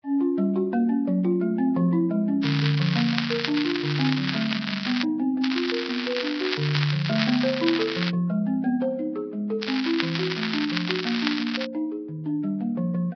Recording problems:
codec artefacts; Vorbis, log-spectral distance 7 dB, nothing above 11.3 kHz
crackling; from 2.5 to 5 s, from 5.5 to 8 s and from 9.5 to 12 s; loose cable, SNR 4 dB

